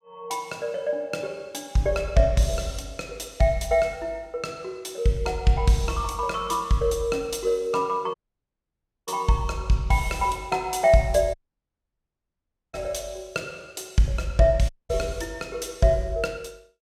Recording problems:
audio cutting out; at 8 s for 1 s, at 11 s for 1.5 s and at 15 s

